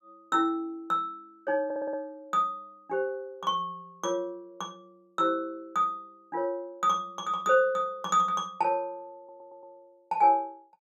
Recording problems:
audio stuttering; at 1.5 s and at 9 s

